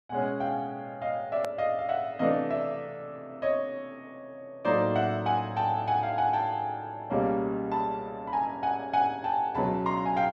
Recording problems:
click at an edit; at 1.5 s

